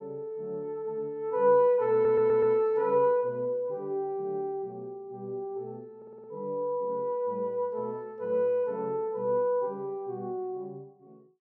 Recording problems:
audio stuttering; at 2 s and at 6 s

